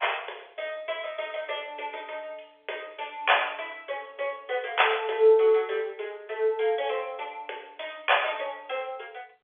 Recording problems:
phone line; 370 Hz to 3.5 kHz, G.711

